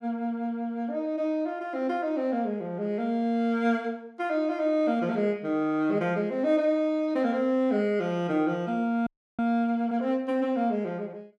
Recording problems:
frozen audio; at 9 s

